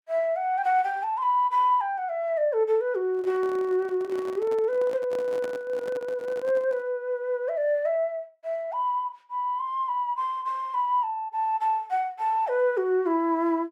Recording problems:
microphone handling noise; from 3 to 7 s; peak -8 dB vs average level

